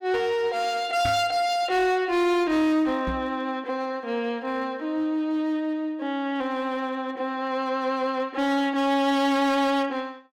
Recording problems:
distortion; hard clipping, uneven, signal-to-distortion ratio 11 dB
microphone bump; at 1 s and at 3 s; peak -2 dB vs average level

